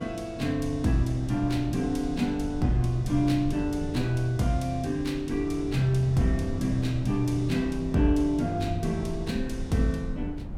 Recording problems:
wind on the microphone; below 140 Hz, SNR 11 dB

